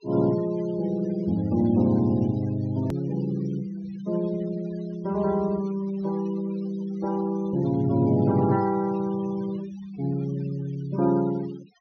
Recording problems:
treble cut off; nothing above 6.4 kHz
noise reduction artefacts; signal-to-artefact ratio 22 dB
edit click; at 3 s

